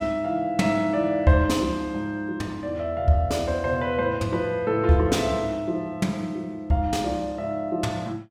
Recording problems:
none

